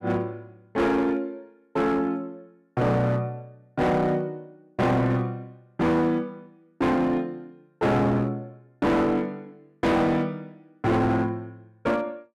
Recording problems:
distortion; hard clipping, uneven, signal-to-distortion ratio 8 dB

